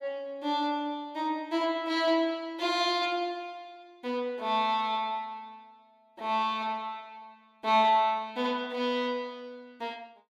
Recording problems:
none

